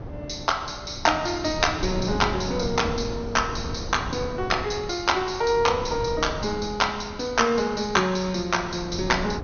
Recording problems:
treble missing; nothing above 6.5 kHz
wind noise; below 360 Hz, SNR 10 dB

